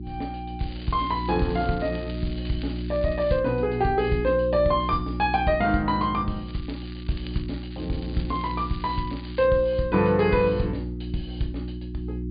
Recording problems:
treble missing; nothing above 4.8 kHz
hum; 60 Hz, harmonics up to 360 Hz, SNR 8 dB
crackle; from 0.5 to 3.5 s and from 6.5 to 9.5 s; loose cable, SNR 21 dB

